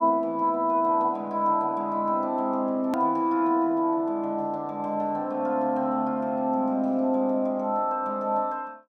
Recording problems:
hard cut with a click; at 3 s

